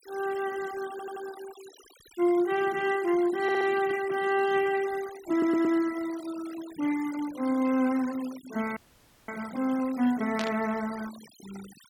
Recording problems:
noise reduction artefacts; signal-to-artefact ratio 18 dB
stutter; at 1 s, at 3.5 s and at 5.5 s
audio freezing; at 9 s for 0.5 s
static burst; at 10 s; peak -2 dB vs average level

